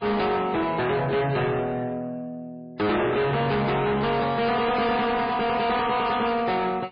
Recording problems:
lossy codec; MP3, log-spectral distance 3 dB, nothing above 4.6 kHz
distorted audio; soft clipping, signal-to-distortion ratio 7 dB

